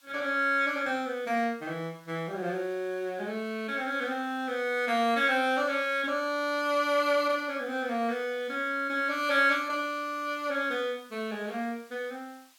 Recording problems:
hiss; SNR 29 dB

